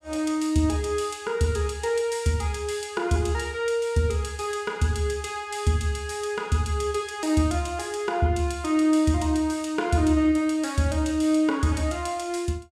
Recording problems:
none

